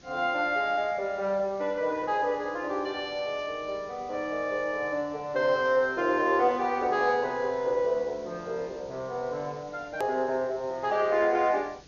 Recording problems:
low-pass filter; nothing above 6.7 kHz
background hiss; SNR 25 dB
click at an edit; at 10 s

